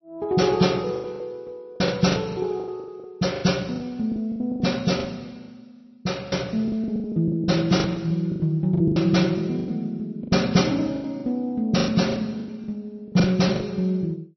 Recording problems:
codec artefacts; MP3, log-spectral distance 2 dB, nothing above 5.8 kHz
lost packets; 15% of the sound replaced, filled with the last packet

